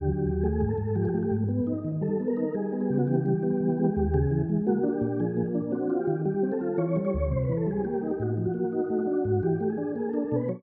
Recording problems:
none

